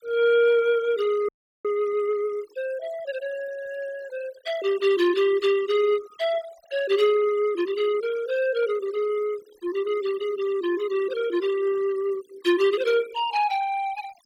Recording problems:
noise reduction artefacts; signal-to-artefact ratio 19 dB
frozen audio; at 1.5 s

